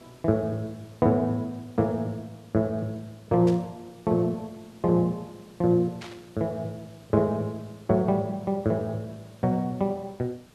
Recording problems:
background hiss; slope -4 dB per octave, SNR 27 dB
burst of static; at 3.5 s and at 6 s; peak -10 dB vs average level

